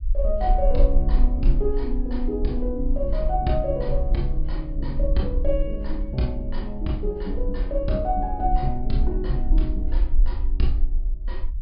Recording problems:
low-pass filter; nothing above 5.2 kHz
low-frequency rumble; below 42 Hz, strongest tone 24 Hz, SNR 0 dB

